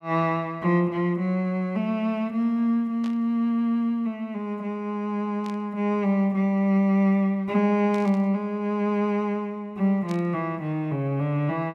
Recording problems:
burst of static; 4 times, first at 3 s; peak -14 dB vs average level

